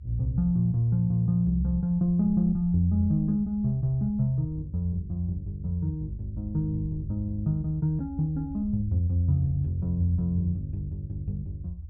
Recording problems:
low-frequency rumble; below 80 Hz, SNR 14 dB

